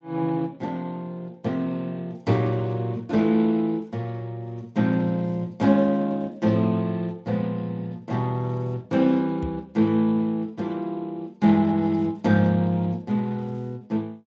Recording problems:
lossy codec; Speex, log-spectral distance 2 dB, nothing above 16 kHz
microphone thump; at 9.5 s; peak -5 dB vs average level

